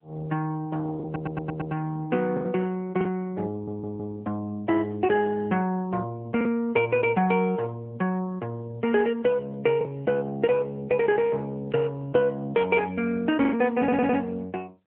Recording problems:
telephone audio; 190 Hz to 3.2 kHz, AMR-NB
packet loss; 2% of the sound replaced, filled with the last packet
audio stuttering; at 1 s, at 3.5 s and at 14 s

